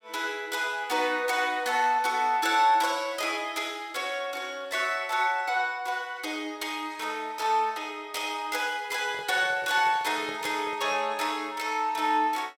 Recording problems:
handling noise; from 9 to 11 s; peak -11 dB vs average level

